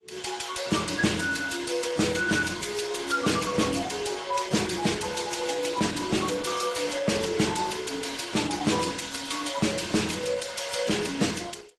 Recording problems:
codec artefacts; AAC, then Opus, log-spectral distance 7 dB
distortion; soft clipping, signal-to-distortion ratio 11 dB

